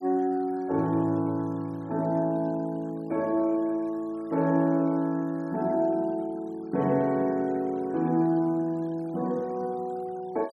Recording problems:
denoising artefacts; signal-to-artefact ratio 28 dB

